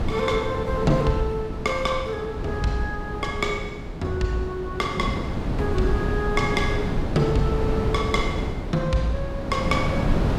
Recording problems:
wind noise; below 320 Hz, SNR 3 dB

